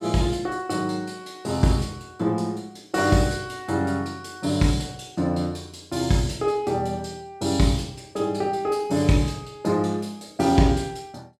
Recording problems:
none

